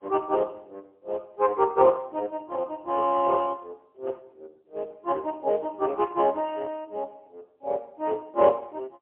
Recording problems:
phone line; 320 Hz to 2.1 kHz, AMR-NB, then MP3

